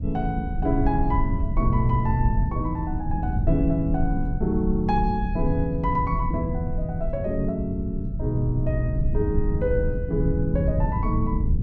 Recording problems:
rumble; below 110 Hz, SNR 1 dB

